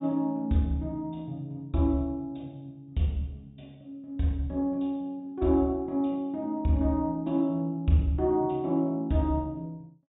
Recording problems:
treble missing; nothing above 4 kHz

